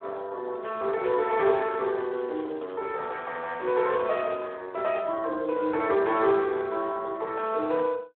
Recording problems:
phone line; 280 Hz to 3.6 kHz, Speex
crackle; from 1 to 4.5 s; loose cable, SNR 27 dB

